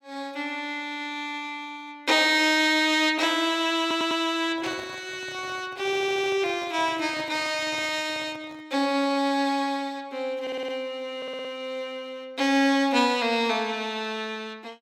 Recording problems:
audio stuttering; 4 times, first at 4 s
handling noise; from 4.5 to 8.5 s; peak -11 dB vs average level

